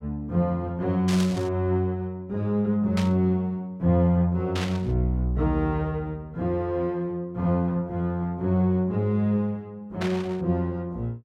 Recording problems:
static burst; 4 times, first at 1 s; peak -3 dB vs average level

